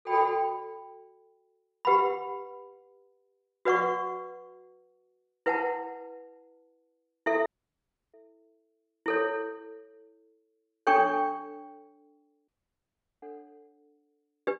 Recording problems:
audio cutting out; at 7.5 s for 0.5 s and at 12 s for 0.5 s

